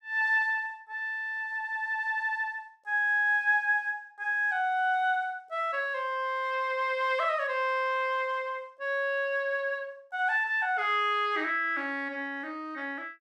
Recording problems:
none

